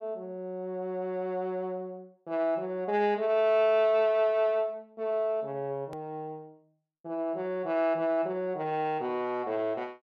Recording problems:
hard cut with a click; at 6 s

